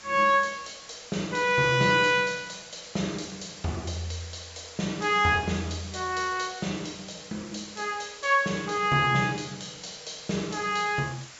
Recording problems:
treble cut off; nothing above 8 kHz
background hiss; slope +1 dB per octave, SNR 18 dB

